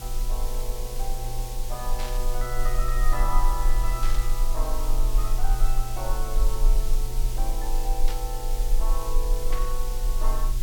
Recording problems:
hum; 60 Hz, harmonics up to 480 Hz, SNR 5 dB
background hiss; SNR 3 dB
low-frequency rumble; below 34 Hz, strongest tone 18 Hz, SNR -7 dB
static burst; 4 times, first at 2 s; peak +1 dB vs average level

